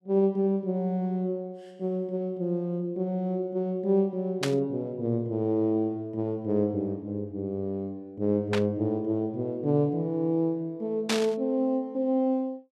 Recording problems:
burst of static; at 4.5 s, at 8.5 s and at 11 s; peak +4 dB vs average level

